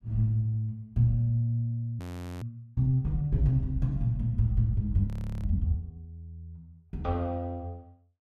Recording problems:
audio freezing; at 2 s and at 5 s

